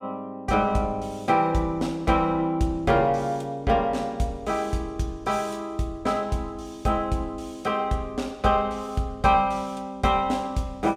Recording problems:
none

